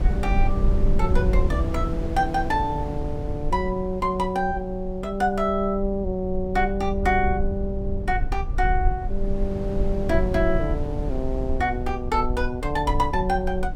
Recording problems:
low-frequency rumble; below 62 Hz, SNR 4 dB
wind noise; below 280 Hz, SNR 10 dB

